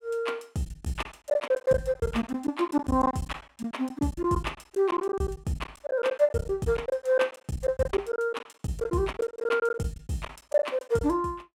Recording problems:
lost packets; 15% of the sound replaced, filled with silence

